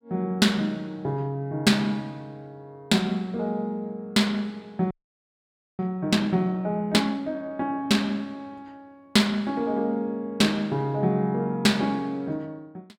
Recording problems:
frozen audio; at 5 s for 1 s

